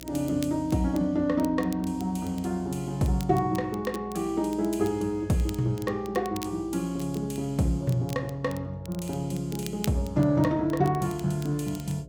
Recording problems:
hum; 60 Hz, harmonics up to 660 Hz, SNR 19 dB
crackle; vinyl, SNR 19 dB

